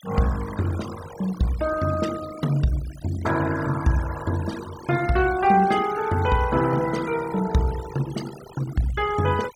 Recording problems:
denoising artefacts; signal-to-artefact ratio 15 dB

